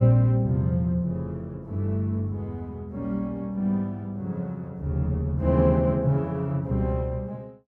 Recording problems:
none

